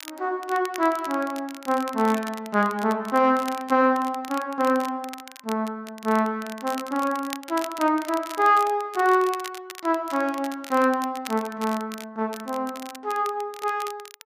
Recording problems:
crackling; vinyl, SNR 17 dB

